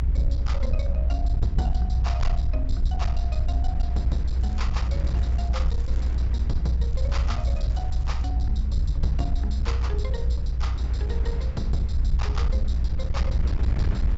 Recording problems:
treble cut off; nothing above 8 kHz
distortion; hard clipping, uneven, signal-to-distortion ratio 11 dB
rumble; below 64 Hz, strongest tone 60 Hz, SNR -10 dB
wind on the microphone; below 240 Hz, SNR 5 dB
crackle; from 4.5 to 6 s and from 7 to 8.5 s; loose cable, SNR 21 dB

